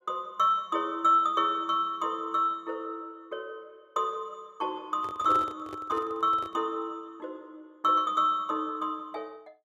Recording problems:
microphone handling noise; from 5 to 6.5 s; peak -6 dB vs average level

